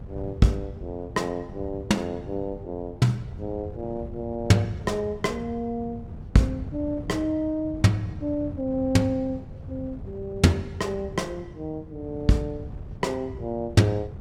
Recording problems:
wind on the microphone; below 160 Hz, SNR 13 dB

